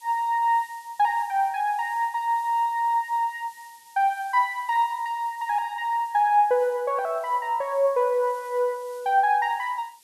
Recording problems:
hiss; SNR 27 dB

